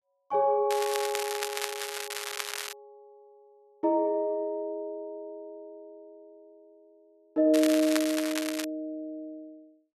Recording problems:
crackling; from 0.5 to 2.5 s and from 7.5 to 8.5 s; loose cable, SNR 6 dB

